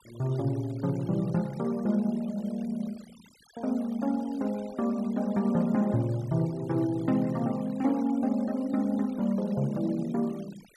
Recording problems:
noise reduction artefacts; signal-to-artefact ratio 23 dB

